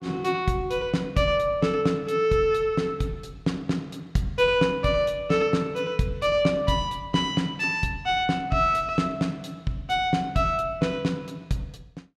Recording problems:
none

